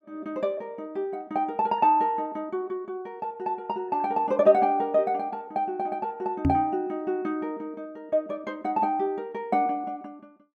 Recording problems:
knock on the microphone; at 6.5 s; peak +7 dB vs average level

